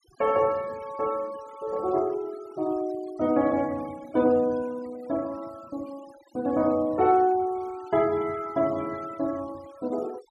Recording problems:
denoising artefacts; signal-to-artefact ratio 22 dB

